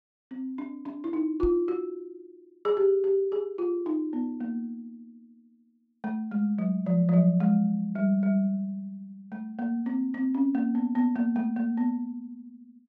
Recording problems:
knock on the microphone; at 1.5 s; peak -4 dB vs average level

